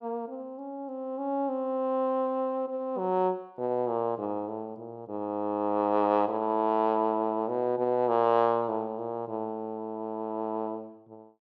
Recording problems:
none

